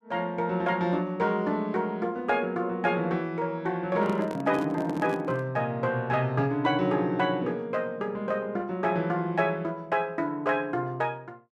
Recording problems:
microphone handling noise; from 4 to 5.5 s; peak -6 dB vs average level

